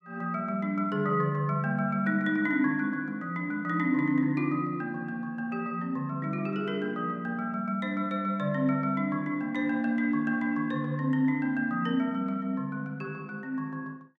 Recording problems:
none

